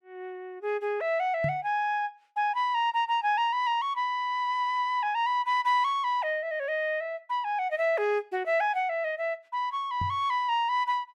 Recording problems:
knock on the microphone; at 1.5 s and at 10 s; peak -1 dB vs average level

